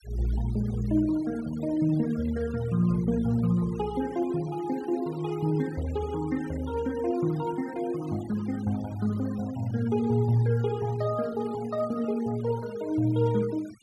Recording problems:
noise reduction artefacts; signal-to-artefact ratio 21 dB

